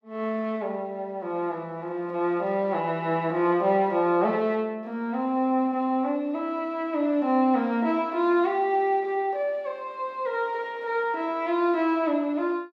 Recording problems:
none

